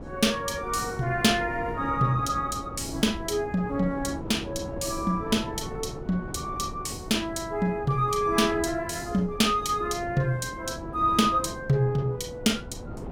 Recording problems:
wind noise; below 410 Hz, SNR 12 dB

